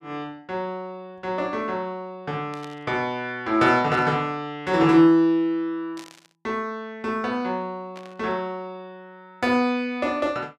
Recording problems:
burst of static; 4 times, first at 2.5 s; peak -14 dB vs average level

